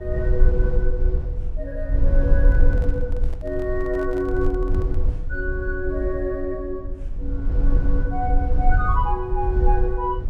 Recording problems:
rumble; below 58 Hz, SNR -3 dB
microphone handling noise; from 2.5 to 5 s; peak -10 dB vs average level

